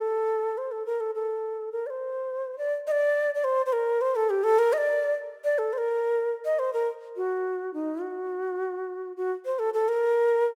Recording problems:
none

